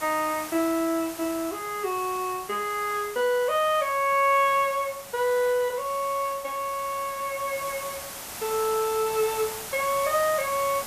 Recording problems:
hiss; SNR 11 dB

